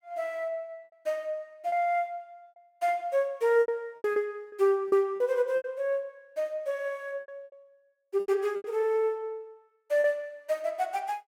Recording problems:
lost packets; 9% of the sound replaced, filled with repeated pitch periods

